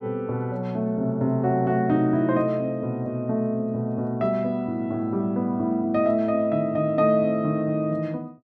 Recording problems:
none

